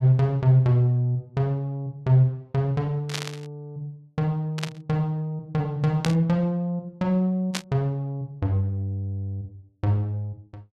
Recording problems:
static burst; 4 times, first at 3 s; peak +1 dB vs average level

